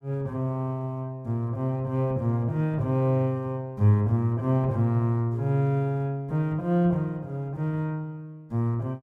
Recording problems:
none

